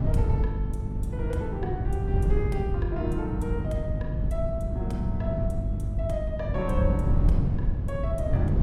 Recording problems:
hum; 50 Hz, harmonics up to 350 Hz, SNR 2 dB
wind on the microphone; below 130 Hz, SNR -4 dB

